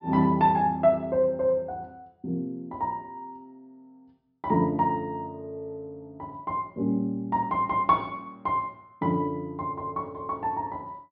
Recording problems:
treble cut off; nothing above 5.5 kHz

